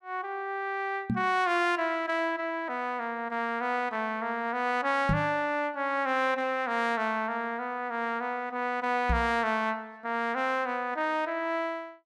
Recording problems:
microphone bump; at 1 s, at 5 s and at 9 s; peak +5 dB vs average level

